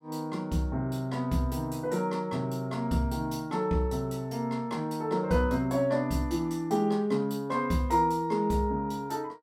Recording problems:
none

